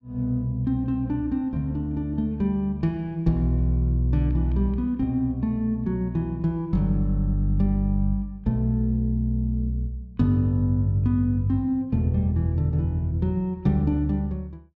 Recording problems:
none

